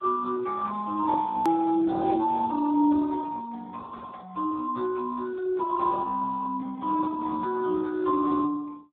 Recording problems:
telephone audio; 260 Hz to 2.1 kHz, Speex
hard cut with a click; at 1.5 s

